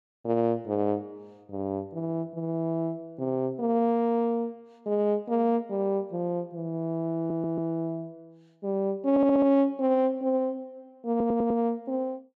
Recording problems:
audio stuttering; at 7 s, at 9 s and at 11 s

